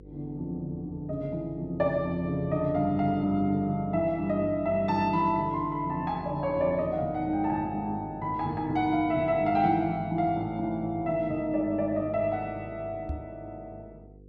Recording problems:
hum; 50 Hz, harmonics up to 500 Hz, SNR 21 dB
microphone thump; at 13 s; peak -2 dB vs average level

